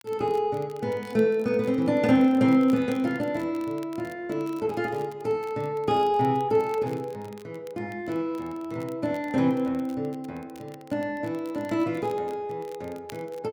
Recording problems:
crackling; vinyl, SNR 27 dB

